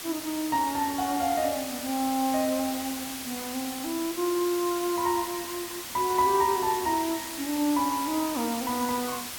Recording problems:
hiss; slope 0 dB per octave, SNR 7 dB

